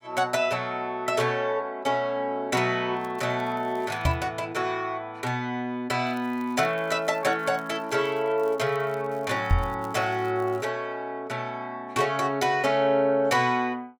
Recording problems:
crackling; from 3 to 4 s and from 6 to 11 s; loose cable, SNR 29 dB
knock on the microphone; at 4 s and at 9.5 s; peak +6 dB vs average level

